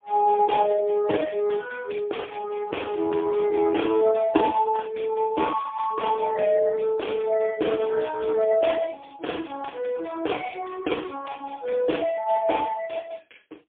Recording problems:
telephone audio; 260 Hz to 3.4 kHz, AMR-NB, then MP3

